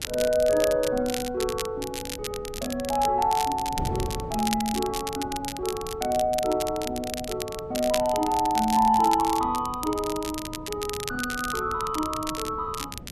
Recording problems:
wind on the microphone; below 270 Hz, SNR 15 dB
crackle; vinyl, SNR 9 dB

